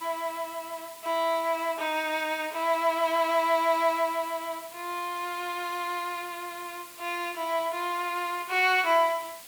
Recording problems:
background hiss; slope +1 dB per octave, SNR 17 dB

